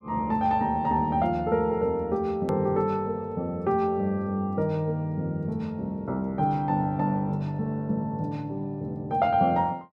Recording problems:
edit click; at 2.5 s

